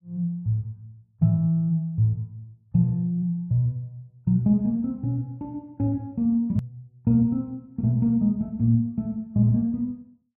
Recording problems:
hard cut with a click; at 6.5 s

